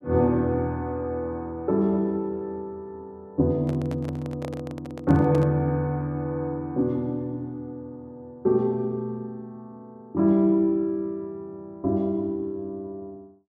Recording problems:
microphone handling noise; from 3.5 to 5.5 s; peak -6 dB vs average level

